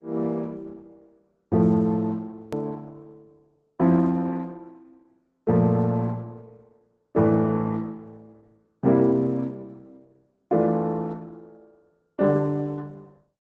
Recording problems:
lossy compression; Opus, log-spectral distance 2 dB, nothing above 13.1 kHz
hard cut with a click; at 2.5 s

